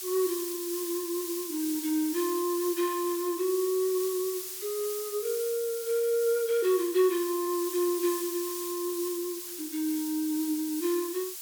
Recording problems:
hiss; slope +4 dB per octave, SNR 7 dB

